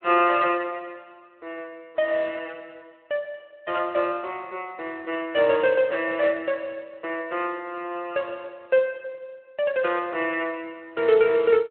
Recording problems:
telephone audio; 190 Hz to 3.2 kHz, Speex

